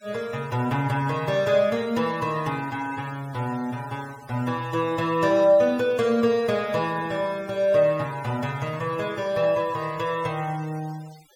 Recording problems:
noise reduction artefacts; signal-to-artefact ratio 23 dB

